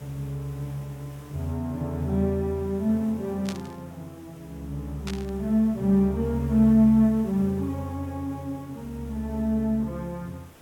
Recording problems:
hiss; slope -5 dB per octave, SNR 25 dB
static burst; at 3.5 s and at 5 s; peak -6 dB vs average level

